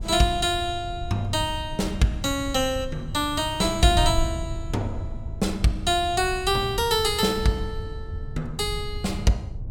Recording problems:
wind on the microphone; below 96 Hz, SNR 9 dB

